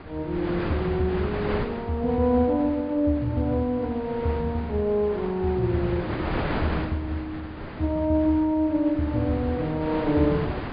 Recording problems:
treble missing; nothing above 4.9 kHz
wind noise; below 1.2 kHz, SNR 9 dB

